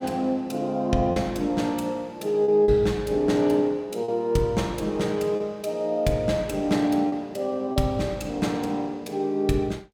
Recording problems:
lost packets; 3% of the sound replaced, filled with repeated pitch periods

